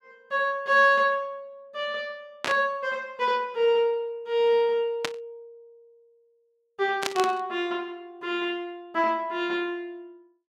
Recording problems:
burst of static; at 2.5 s, at 5 s and at 7 s; peak +2 dB vs average level

